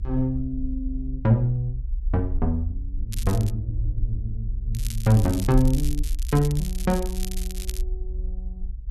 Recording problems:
rumble; below 56 Hz, strongest tone 34 Hz, SNR 6 dB
crackling; at 3 s and from 4.5 to 8 s; loose cable, SNR 14 dB

